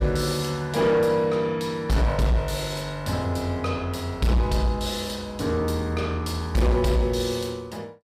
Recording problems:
distortion; soft clipping, signal-to-distortion ratio 11 dB

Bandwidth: 15.5 kHz